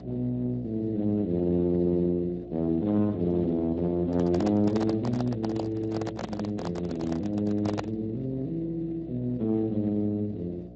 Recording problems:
lossy codec; Speex, log-spectral distance 2 dB
hum; 60 Hz, harmonics up to 720 Hz, SNR 14 dB
handling noise; from 4 to 8 s; peak 0 dB vs average level

